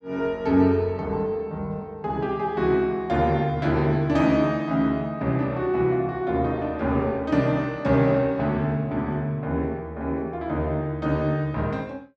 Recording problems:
none

